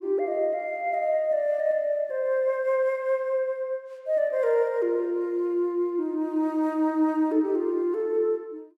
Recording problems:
none

